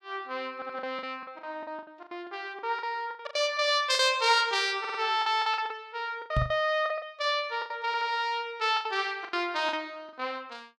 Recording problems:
packet loss; 14% of the sound replaced, filled with the last packet
stutter; at 0.5 s, at 5 s and at 8 s
microphone thump; at 6.5 s; peak +4 dB vs average level

